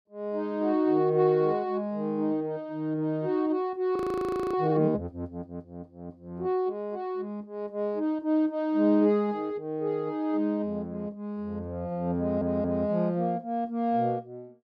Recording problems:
audio freezing; at 4 s for 0.5 s
stutter; at 12 s

